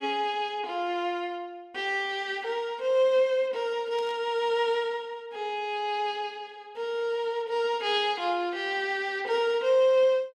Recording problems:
static burst; at 4 s; peak -16 dB vs average level

